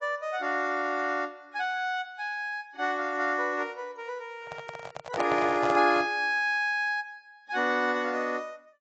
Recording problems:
lossy codec; AAC, log-spectral distance 2 dB, nothing above 7.6 kHz
microphone handling noise; from 4.5 to 6 s; peak +1 dB vs average level

